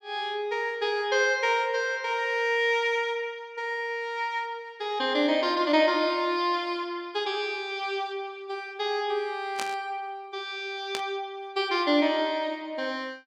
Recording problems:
static burst; at 9.5 s and at 11 s; peak -1 dB vs average level

